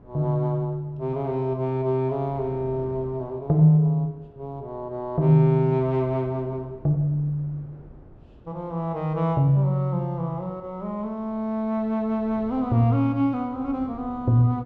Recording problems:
wind noise; below 340 Hz, SNR 24 dB

